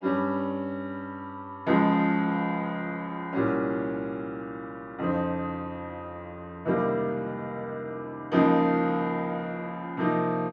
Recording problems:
none

